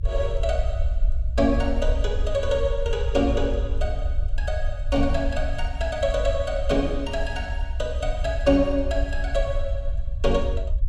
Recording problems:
low-frequency rumble; below 64 Hz, SNR 2 dB

